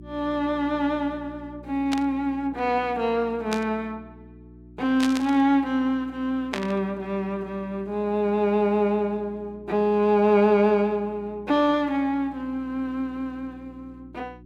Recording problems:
hum; 60 Hz, harmonics up to 360 Hz, SNR 22 dB
static burst; 4 times, first at 2 s; peak -1 dB vs average level

